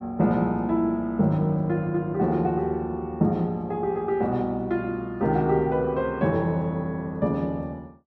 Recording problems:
none

